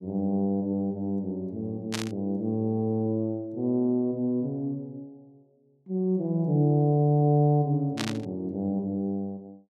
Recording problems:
static burst; at 2 s and at 8 s; peak 0 dB vs average level

